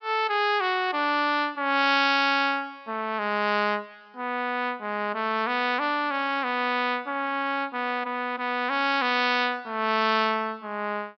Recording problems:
treble missing; nothing above 5.5 kHz

